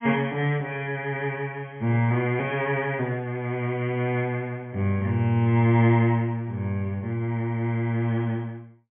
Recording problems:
low-pass filter; nothing above 3.3 kHz

